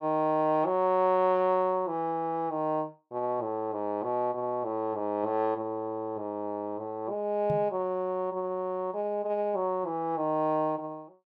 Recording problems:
microphone thump; at 7.5 s; peak -1 dB vs average level

